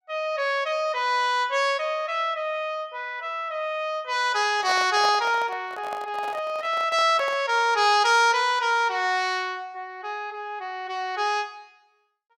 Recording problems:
microphone handling noise; from 4.5 to 7.5 s; peak -4 dB vs average level

